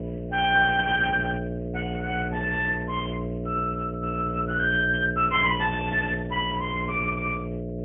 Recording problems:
low-pass filter; nothing above 3.2 kHz
lossy codec; MP3, then Speex, log-spectral distance 4 dB
hum; 60 Hz, harmonics up to 660 Hz, SNR 6 dB

